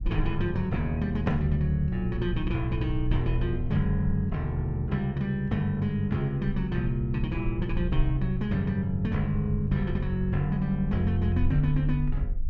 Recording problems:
rumble; below 50 Hz, SNR 9 dB

